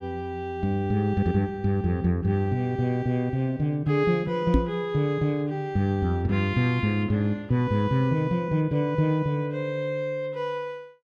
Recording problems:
microphone thump; at 4.5 s; peak +7 dB vs average level

